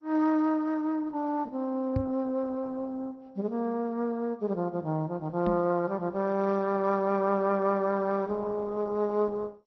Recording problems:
lossy codec; MP2, then Opus, log-spectral distance 2 dB
microphone bump; at 2 s and at 5.5 s; peak +3 dB vs average level

